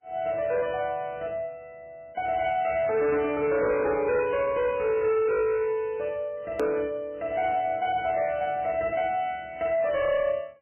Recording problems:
lossy codec; MP3, log-spectral distance 2 dB, nothing above 2.5 kHz
distorted audio; hard clipping, signal-to-distortion ratio 11 dB
edit click; at 6.5 s

